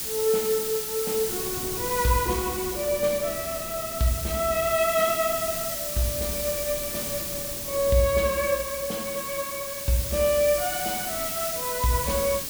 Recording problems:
background hiss; slope +3 dB per octave, SNR 3 dB
wind noise; below 380 Hz, SNR 18 dB

